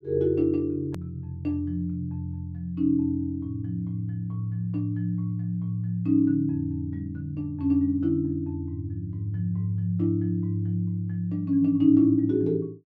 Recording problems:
click at an edit; at 1 s

